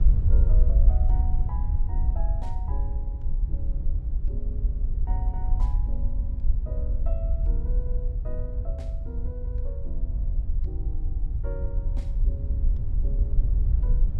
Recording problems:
wind noise; below 60 Hz, SNR -16 dB

